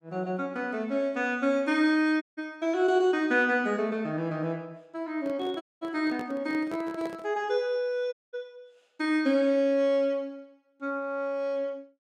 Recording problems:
audio cutting out; at 2 s, at 5.5 s and at 8 s
handling noise; from 5 to 7.5 s; peak -8 dB vs average level

